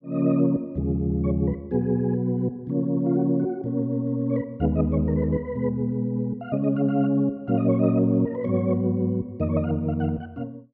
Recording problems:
low-pass filter; nothing above 7.5 kHz

